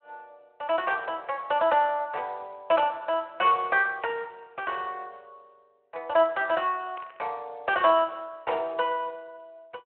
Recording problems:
telephone audio; 370 Hz to 3.3 kHz, Speex
burst of static; at 7 s; peak -18 dB vs average level

